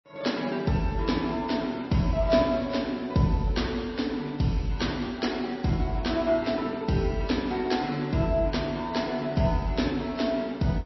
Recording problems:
lossy compression; MP3, log-spectral distance 3 dB, nothing above 5.7 kHz

